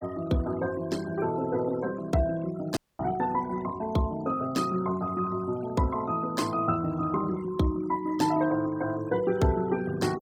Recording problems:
noise reduction artefacts; signal-to-artefact ratio 19 dB
dropout; at 3 s

